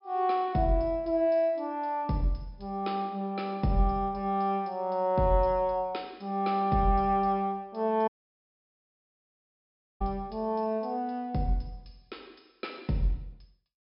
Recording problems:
treble cut off; nothing above 5.5 kHz
audio cutting out; at 8 s for 2 s

